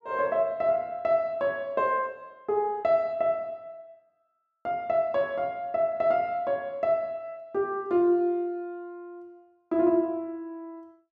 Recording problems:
none

